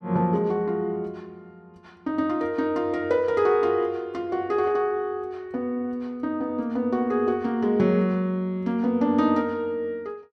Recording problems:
none

